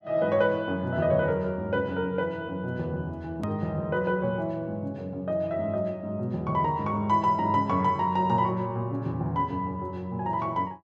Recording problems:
hard cut with a click; at 3.5 s

